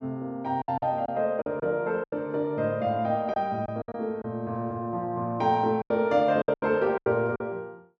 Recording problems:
lost packets; 9% of the sound replaced, filled with silence

